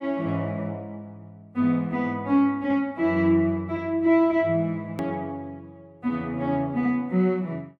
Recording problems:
click at an edit; at 5 s

